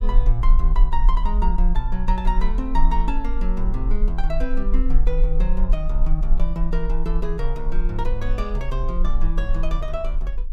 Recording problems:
low-frequency rumble; below 36 Hz, strongest tone 18 Hz, SNR -5 dB

